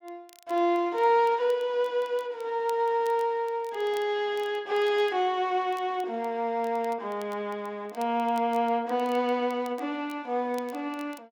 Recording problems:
crackling; vinyl, SNR 27 dB

